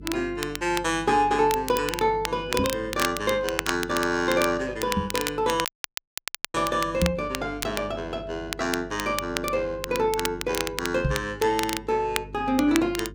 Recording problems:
electrical hum; 50 Hz, harmonics up to 450 Hz, SNR 18 dB
crackle; vinyl, SNR 8 dB
knock on the microphone; 4 times, first at 2.5 s; peak +5 dB vs average level
dropout; at 5.5 s for 1 s

